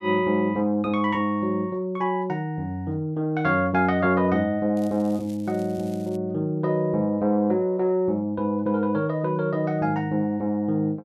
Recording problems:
crackle; from 5 to 6 s; loose cable, SNR 27 dB

